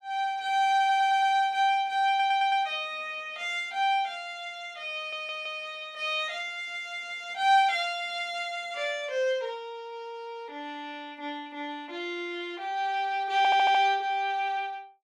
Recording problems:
stutter; 4 times, first at 1 s

